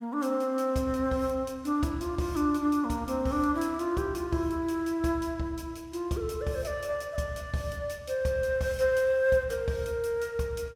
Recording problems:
none

